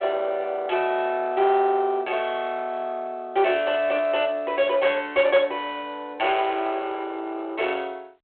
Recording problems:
phone line; 320 Hz to 3.5 kHz, G.726
distortion; soft clipping, signal-to-distortion ratio 13 dB

